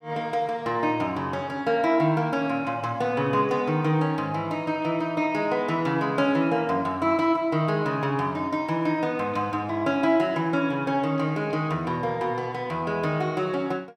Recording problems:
none

